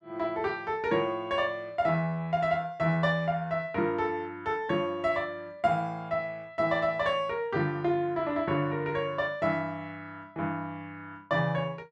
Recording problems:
none

